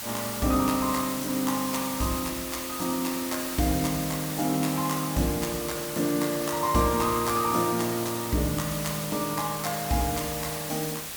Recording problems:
background hiss; slope 0 dB per octave, SNR 5 dB

